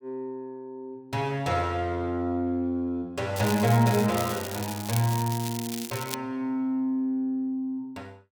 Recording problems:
crackling; from 3.5 to 6 s; loose cable, SNR 9 dB

